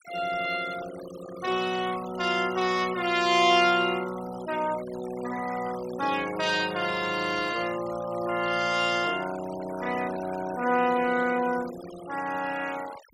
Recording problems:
noise reduction artefacts; signal-to-artefact ratio 15 dB

